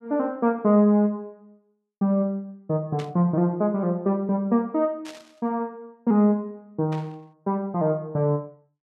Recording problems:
static burst; at 3 s, at 5 s and at 7 s; peak -12 dB vs average level

